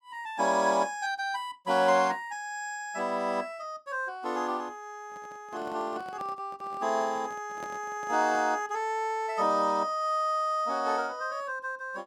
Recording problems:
handling noise; from 5 to 8.5 s; peak -9 dB vs average level

